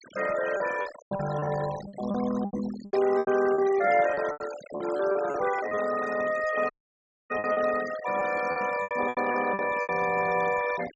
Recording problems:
treble cut off; nothing above 8 kHz
noise reduction artefacts; signal-to-artefact ratio 13 dB
lost packets; 13% of the sound replaced, filled with repeated pitch periods
burst of static; at 3 s; peak -16 dB vs average level
dropout; at 6.5 s for 0.5 s

